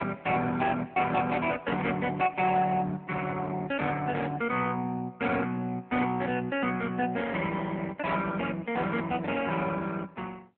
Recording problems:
telephone audio; 220 Hz to 3.3 kHz, AMR-NB

